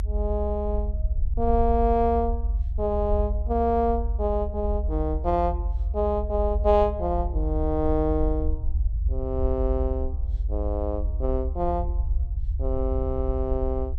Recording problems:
rumble; below 68 Hz, SNR 2 dB

